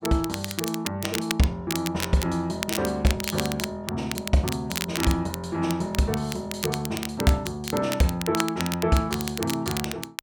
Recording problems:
crackle; vinyl, SNR 6 dB

